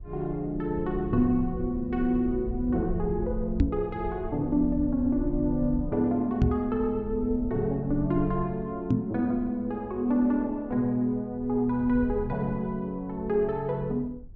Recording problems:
treble missing; nothing above 8 kHz
rumble; below 76 Hz, SNR 13 dB
knock on the microphone; at 3.5 s, at 6.5 s and at 9 s; peak +8 dB vs average level

